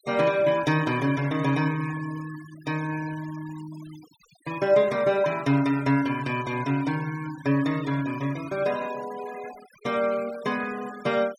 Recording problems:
noise reduction artefacts; signal-to-artefact ratio 19 dB

